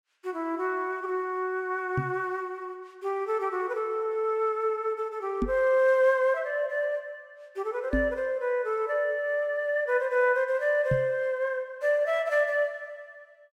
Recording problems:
microphone thump; 4 times, first at 2 s; peak +3 dB vs average level

